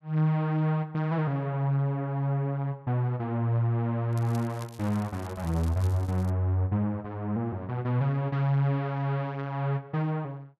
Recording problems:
crackle; from 4 to 6.5 s; loose cable, SNR 23 dB

